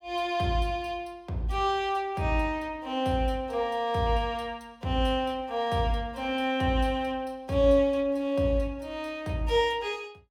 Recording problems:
none

